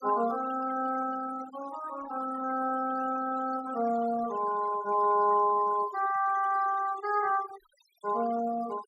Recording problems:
denoising artefacts; signal-to-artefact ratio 18 dB

